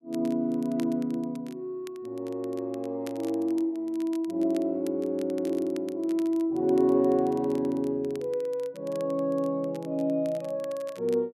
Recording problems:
crackling; vinyl, SNR 25 dB

